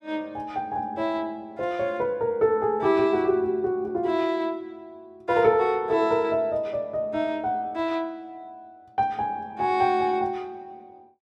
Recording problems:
none

